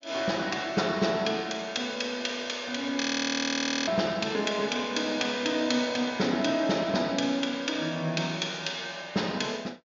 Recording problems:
low-pass filter; nothing above 7.2 kHz
audio freezing; at 3 s for 1 s

